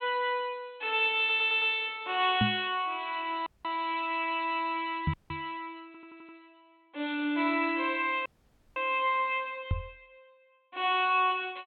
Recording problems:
treble cut off; nothing above 4 kHz
audio stuttering; at 1 s and at 6 s
knock on the microphone; at 2.5 s, at 5 s and at 9.5 s; peak +4 dB vs average level
dropout; at 3.5 s, at 5 s and at 8.5 s for 0.5 s

